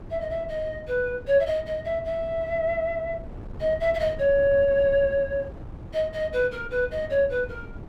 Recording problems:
wind noise; below 250 Hz, SNR 16 dB

